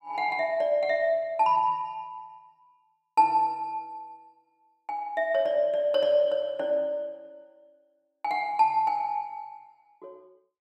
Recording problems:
none

